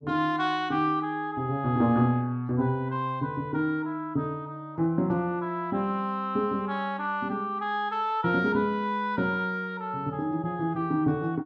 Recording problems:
none

